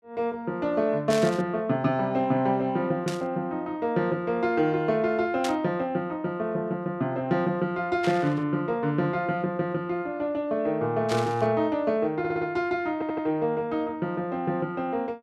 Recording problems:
burst of static; 5 times, first at 1 s; peak -2 dB vs average level
audio stuttering; at 12 s and at 13 s

